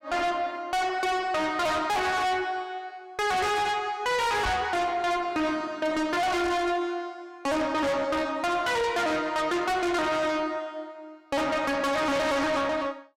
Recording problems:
distorted audio; soft clipping, signal-to-distortion ratio 6 dB
knock on the microphone; at 4.5 s; peak 0 dB vs average level

